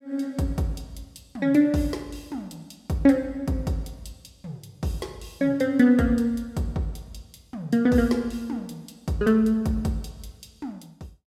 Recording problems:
none

